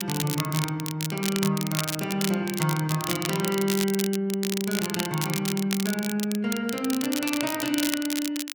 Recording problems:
crackle; vinyl, SNR 4 dB

